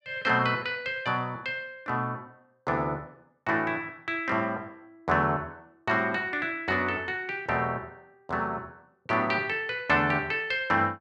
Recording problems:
none

